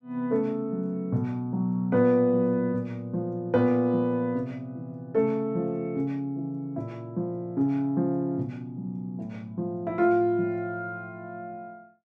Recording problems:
none

